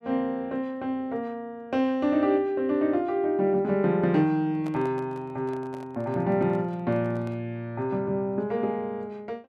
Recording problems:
microphone handling noise; from 4.5 to 7.5 s; peak -11 dB vs average level

